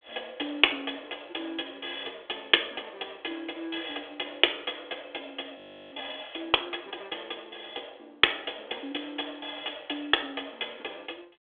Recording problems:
phone line; 260 Hz to 3.5 kHz, G.726
audio freezing; at 5.5 s

